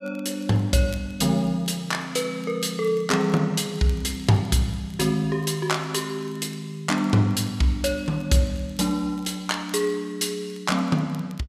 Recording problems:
crackling; vinyl, SNR 29 dB

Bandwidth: 14.5 kHz